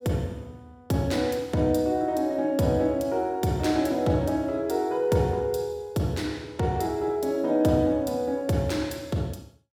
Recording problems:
none

